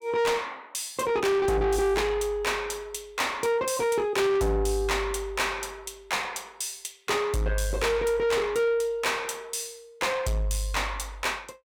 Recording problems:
distortion; soft clipping, signal-to-distortion ratio 8 dB

